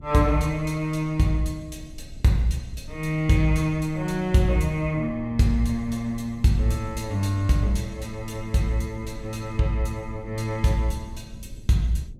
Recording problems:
low-frequency rumble; below 110 Hz, SNR 18 dB

